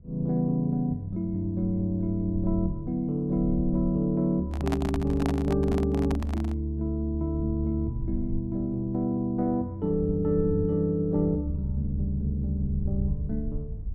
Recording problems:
rumble; below 78 Hz, SNR 12 dB
handling noise; from 4.5 to 6.5 s; peak 0 dB vs average level

